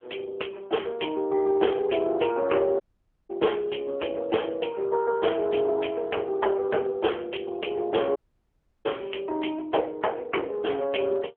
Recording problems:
telephone audio; 280 Hz to 3.3 kHz, AMR-NB
dropout; at 3 s and at 8 s for 0.5 s

